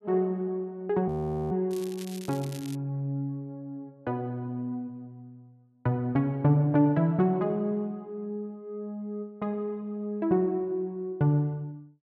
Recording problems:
audio freezing; at 1 s
crackling; from 1.5 to 3 s; loose cable, SNR 17 dB

